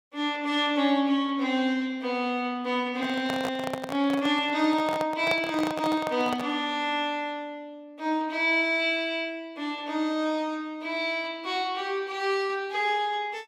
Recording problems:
microphone handling noise; from 3 to 6.5 s; peak 0 dB vs average level

